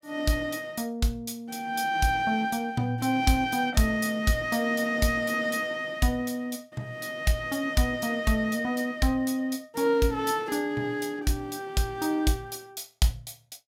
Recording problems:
none

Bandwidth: 16 kHz